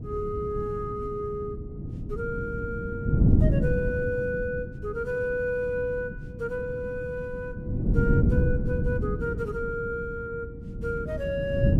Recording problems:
wind on the microphone; below 190 Hz, SNR -1 dB

